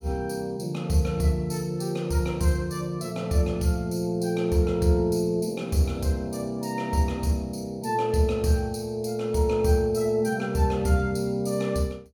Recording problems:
none

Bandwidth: 18 kHz